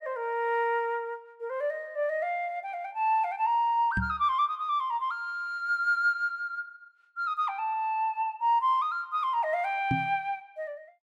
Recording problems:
microphone thump; at 4 s and at 10 s; peak +2 dB vs average level

